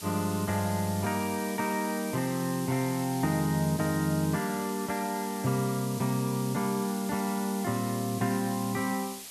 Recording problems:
background hiss; SNR 11 dB

